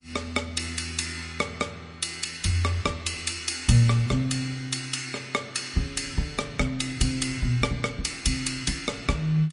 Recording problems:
lossy compression; MP3, log-spectral distance 6 dB, nothing above 10.4 kHz

